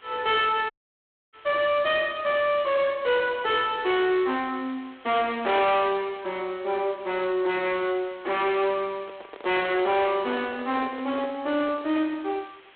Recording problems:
phone line; 240 Hz to 4 kHz, G.726
distorted audio; hard clipping, signal-to-distortion ratio 6 dB
background hiss; SNR 27 dB
audio cutting out; at 0.5 s for 0.5 s
microphone handling noise; from 9 to 12 s; peak -10 dB vs average level

